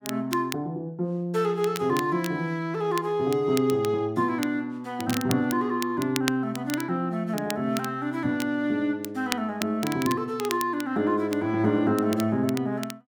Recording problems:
crackle; vinyl, SNR 12 dB

